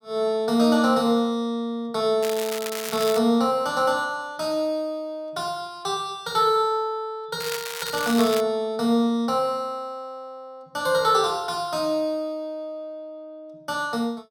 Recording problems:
crackle; at 2 s and from 7.5 to 8.5 s; loose cable, SNR 9 dB

